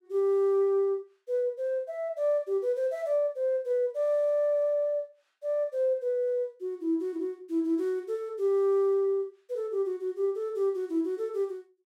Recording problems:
none

